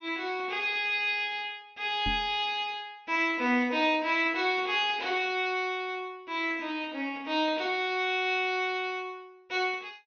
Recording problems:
treble missing; nothing above 6.4 kHz
knock on the microphone; at 2 s; peak -4 dB vs average level

